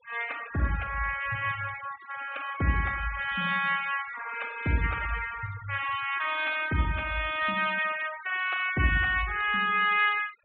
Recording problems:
treble missing; nothing above 4 kHz
denoising artefacts; signal-to-artefact ratio 15 dB

